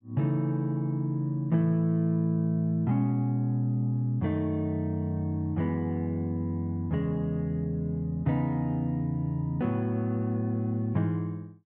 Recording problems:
none

